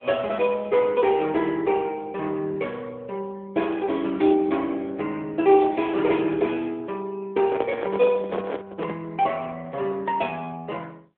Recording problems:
phone line; 220 Hz to 3.5 kHz, AMR-NB
microphone handling noise; from 7.5 to 9 s; peak 0 dB vs average level

